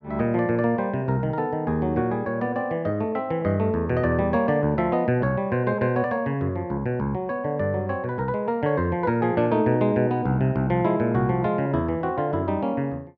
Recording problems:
none

